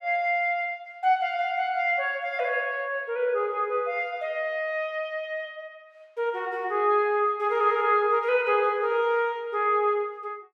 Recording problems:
none

